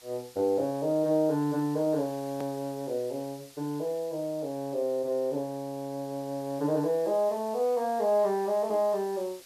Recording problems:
hiss; slope +1 dB per octave, SNR 22 dB
click at an edit; at 2.5 s

